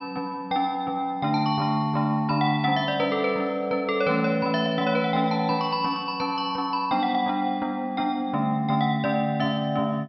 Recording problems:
treble cut off; nothing above 5.6 kHz

